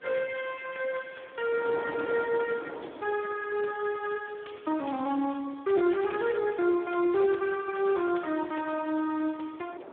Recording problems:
telephone audio; 170 Hz to 3 kHz, Speex
wind on the microphone; below 740 Hz, SNR 12 dB

